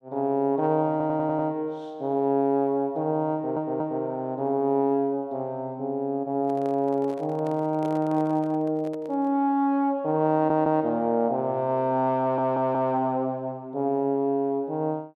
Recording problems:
audio stuttering; 4 times, first at 1 s
microphone handling noise; from 6.5 to 9.5 s; peak -8 dB vs average level

